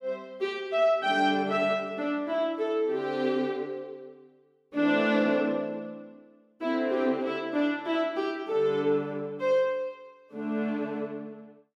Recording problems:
none

